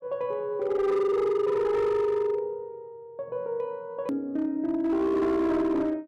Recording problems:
distorted audio; hard clipping, signal-to-distortion ratio 11 dB
click at an edit; at 4 s

